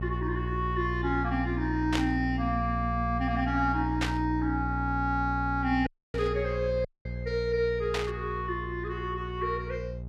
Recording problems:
hum; 60 Hz, harmonics up to 600 Hz, SNR 4 dB
static burst; 4 times, first at 2 s; peak +3 dB vs average level
audio cutting out; at 6 s and at 7 s

